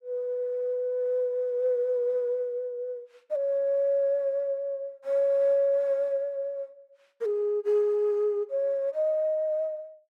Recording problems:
none

